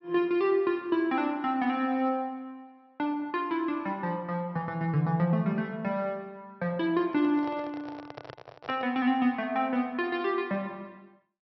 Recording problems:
low-pass filter; nothing above 5.7 kHz
handling noise; from 7 to 9 s; peak -8 dB vs average level

